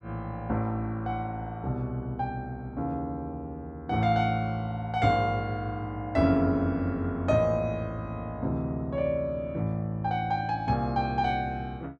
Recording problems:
none

